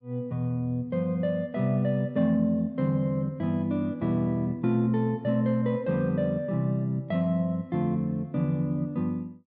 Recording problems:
none

